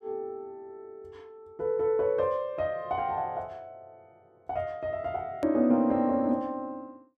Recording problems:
hard cut with a click; at 5.5 s

